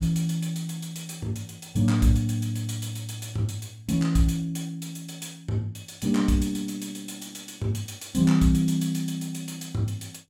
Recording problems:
none

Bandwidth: 16.5 kHz